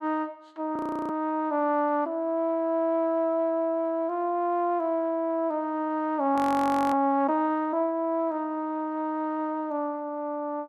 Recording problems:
frozen audio; at 1 s and at 6.5 s for 0.5 s

